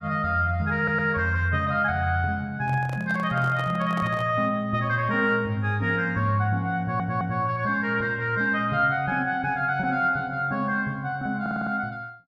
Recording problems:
stutter; at 1 s, at 7 s and at 11 s
handling noise; from 2.5 to 4.5 s; peak -8 dB vs average level

